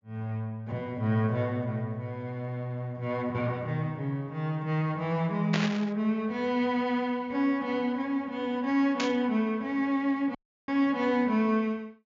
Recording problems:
treble missing; nothing above 7.3 kHz
burst of static; at 5.5 s and at 9 s; peak +3 dB vs average level
dropout; at 10 s

